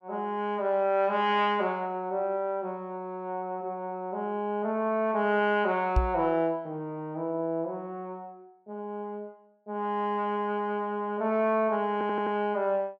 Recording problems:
knock on the microphone; at 6 s; peak +7 dB vs average level
stutter; at 12 s

